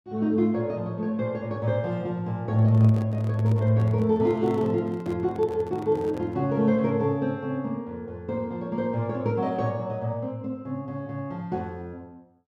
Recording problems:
handling noise; from 2.5 to 6.5 s; peak -10 dB vs average level

